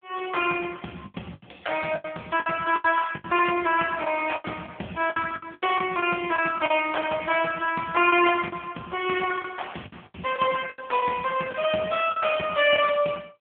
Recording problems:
phone line; 190 Hz to 3.3 kHz, AMR-NB
packet loss; 10% of the sound replaced, filled with the last packet

